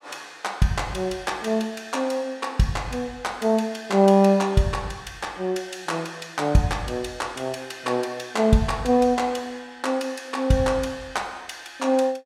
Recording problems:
none

